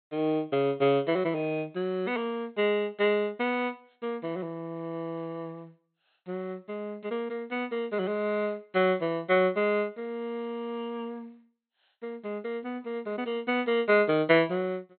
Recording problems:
low-pass filter; nothing above 4.2 kHz

